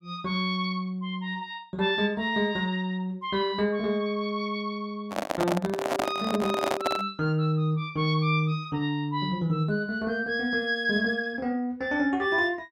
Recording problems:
microphone handling noise; from 5 to 7 s; peak +4 dB vs average level

